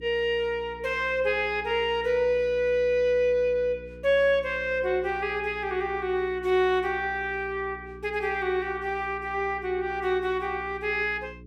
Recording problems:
hum; 60 Hz, harmonics up to 420 Hz, SNR 20 dB

